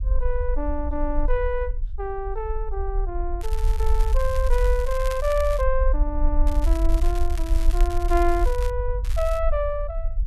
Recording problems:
low-frequency rumble; below 48 Hz, SNR -1 dB
crackling; from 3.5 to 5.5 s, from 6.5 to 8.5 s and at 9 s; loose cable, SNR 15 dB

